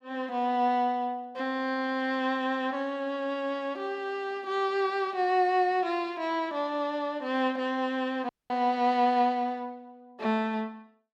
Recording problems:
dropout; at 8.5 s

